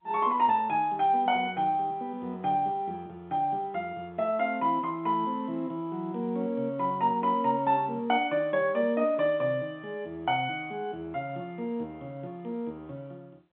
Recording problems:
telephone audio; 150 Hz to 3.6 kHz, G.711

